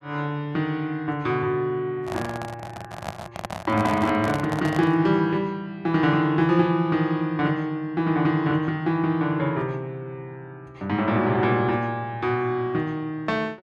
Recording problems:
microphone handling noise; from 2 to 5 s; peak -3 dB vs average level

